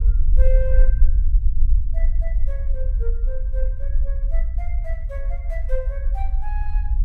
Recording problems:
rumble; below 46 Hz, SNR -13 dB

